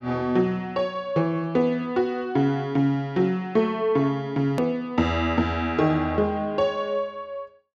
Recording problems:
treble cut off; nothing above 8 kHz
edit click; at 4.5 s

